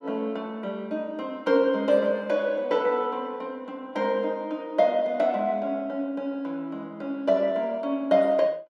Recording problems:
none

